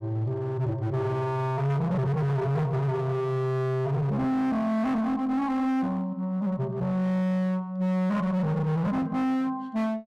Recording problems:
distortion; hard clipping, uneven, signal-to-distortion ratio 7 dB

